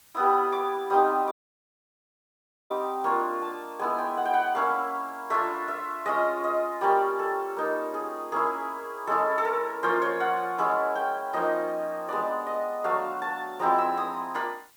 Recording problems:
background hiss; slope 0 dB per octave, SNR 27 dB
dropout; at 1.5 s for 1.5 s

